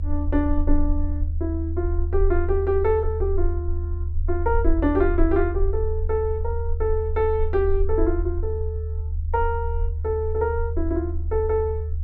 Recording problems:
rumble; below 78 Hz, SNR 2 dB

